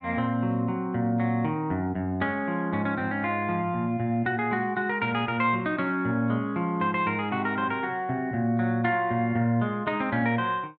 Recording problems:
none

